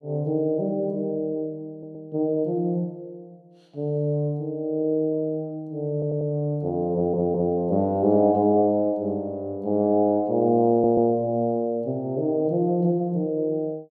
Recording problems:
audio stuttering; 4 times, first at 1.5 s

